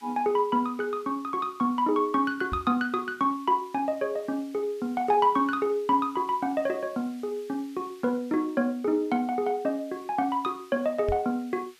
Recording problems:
hiss; SNR 28 dB
microphone thump; at 2.5 s and at 11 s; peak -3 dB vs average level

